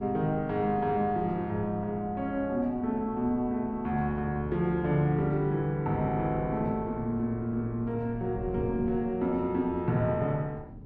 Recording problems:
wind noise; below 250 Hz, SNR 15 dB

